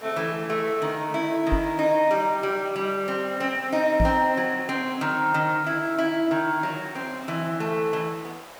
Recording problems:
hiss; SNR 19 dB
microphone bump; at 1.5 s and at 4 s; peak +4 dB vs average level

